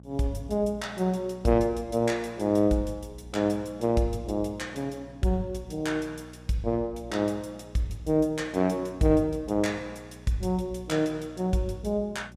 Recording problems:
electrical hum; 60 Hz, harmonics up to 840 Hz, SNR 21 dB

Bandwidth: 15.5 kHz